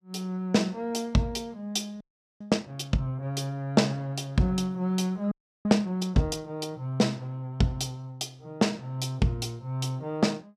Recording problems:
frozen audio; at 2 s and at 5.5 s

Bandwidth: 14.5 kHz